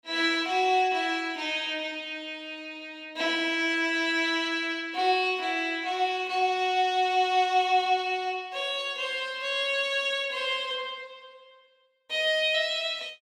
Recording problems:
none

